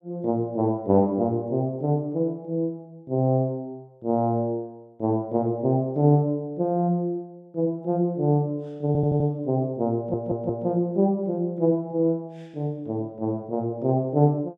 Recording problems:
audio stuttering; at 9 s and at 10 s

